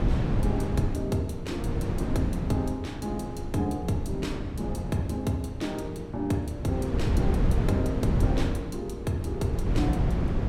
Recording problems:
wind on the microphone; below 190 Hz, SNR -1 dB

